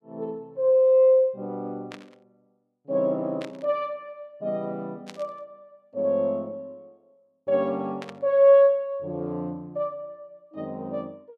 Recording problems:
static burst; 4 times, first at 2 s; peak -12 dB vs average level

